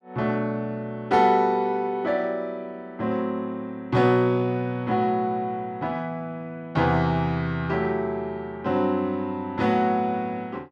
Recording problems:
none

